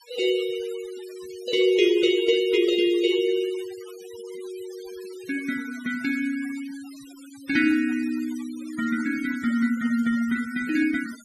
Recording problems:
denoising artefacts; signal-to-artefact ratio 19 dB

